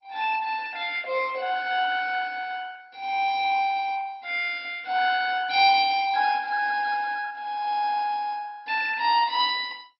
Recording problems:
lossy codec; MP2, log-spectral distance 4 dB, nothing above 4.9 kHz

